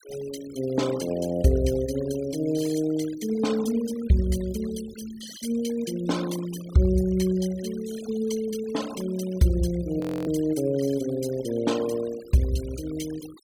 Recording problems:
denoising artefacts; signal-to-artefact ratio 17 dB
frozen audio; at 10 s

